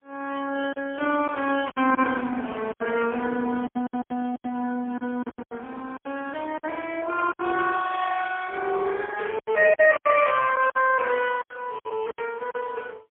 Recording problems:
phone line; 280 Hz to 3 kHz, AMR-NB, then MP3
lost packets; 11% of the sound replaced, filled with silence

